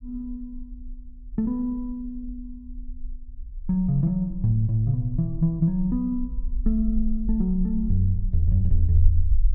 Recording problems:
rumble; below 42 Hz, strongest tone 18 Hz, SNR 8 dB

